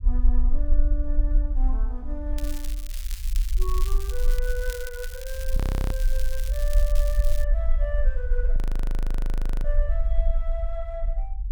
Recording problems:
rumble; below 42 Hz, strongest tone 24 Hz, SNR -10 dB
crackle; from 2.5 to 7.5 s; loose cable, SNR 4 dB
frozen audio; at 5.5 s and at 8.5 s for 1 s

